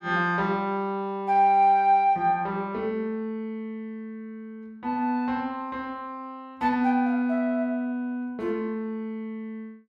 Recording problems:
none

